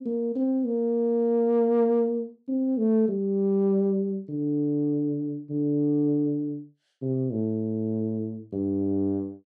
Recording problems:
none

